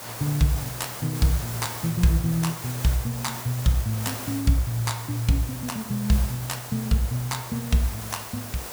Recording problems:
hiss; slope -3 dB per octave, SNR 9 dB

